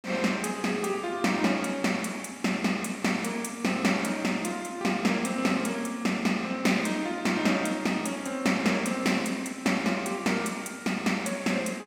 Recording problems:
none

